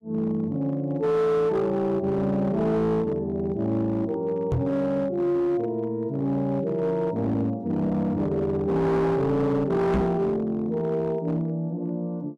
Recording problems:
distorted audio; hard clipping, signal-to-distortion ratio 10 dB
knock on the microphone; at 4.5 s and at 10 s; peak +5 dB vs average level

